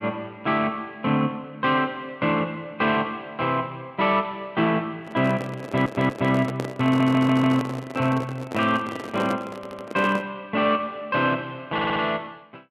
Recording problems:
handling noise; from 5 to 10 s; peak -2 dB vs average level
stutter; 4 times, first at 5.5 s

